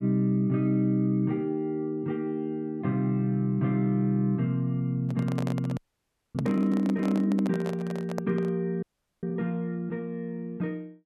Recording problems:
handling noise; from 5 to 8.5 s; peak -1 dB vs average level
audio freezing; at 6 s for 0.5 s and at 9 s

